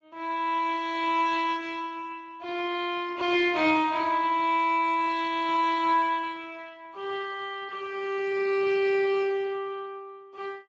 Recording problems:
codec artefacts; Speex, log-spectral distance 3 dB

